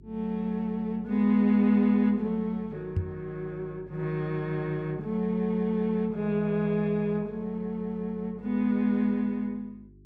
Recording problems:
hum; 50 Hz, harmonics up to 400 Hz, SNR 24 dB
microphone thump; at 3 s; peak +3 dB vs average level

